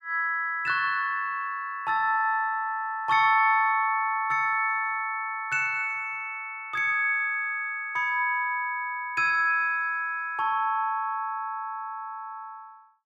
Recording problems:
none

